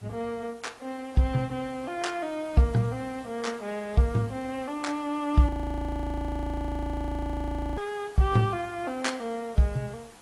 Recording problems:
lossy compression; AAC, log-spectral distance 4 dB
background hiss; slope -3 dB per octave, SNR 23 dB
audio freezing; at 5.5 s for 2.5 s

